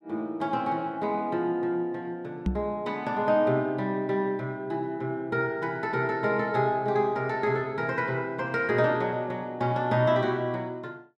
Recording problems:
microphone bump; at 2.5 s; peak +3 dB vs average level

